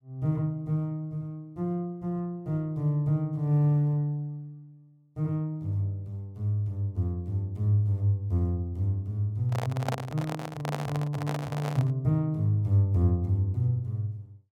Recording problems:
handling noise; from 9.5 to 12 s; peak +1 dB vs average level

